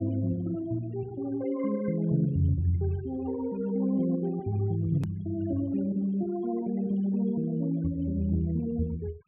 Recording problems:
treble cut off; nothing above 3.3 kHz
noise reduction artefacts; signal-to-artefact ratio 24 dB
hard cut with a click; at 5 s

